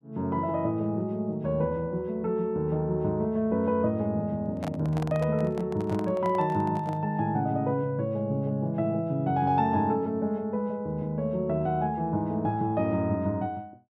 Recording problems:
microphone handling noise; from 4.5 to 7 s; peak -6 dB vs average level

